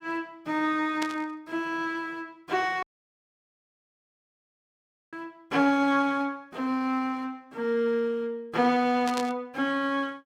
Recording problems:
burst of static; at 1 s and at 9 s; peak -3 dB vs average level
audio cutting out; at 3 s for 2.5 s

